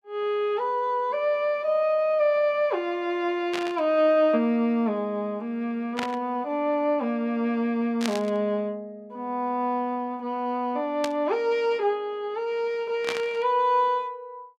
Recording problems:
burst of static; 5 times, first at 3.5 s; peak 0 dB vs average level

